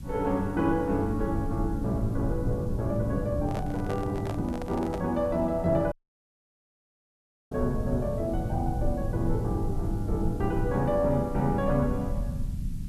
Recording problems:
background hiss; slope +1 dB per octave, SNR 28 dB
rumble; below 130 Hz, SNR 6 dB
microphone handling noise; from 3.5 to 5 s; peak -4 dB vs average level
audio cutting out; at 6 s for 1.5 s

